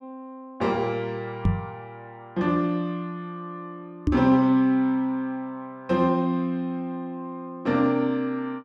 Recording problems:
microphone bump; at 1.5 s and at 4 s; peak +6 dB vs average level

